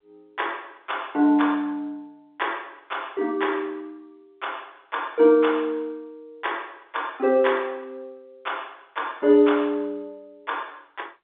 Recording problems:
phone line; 260 Hz to 3.6 kHz, G.711

